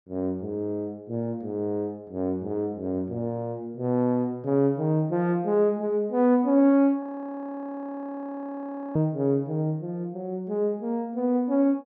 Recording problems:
audio freezing; at 7 s for 2 s

